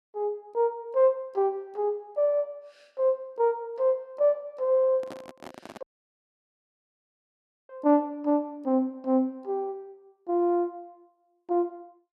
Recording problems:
handling noise; at 5 s; peak -10 dB vs average level
dropout; at 6 s for 2 s

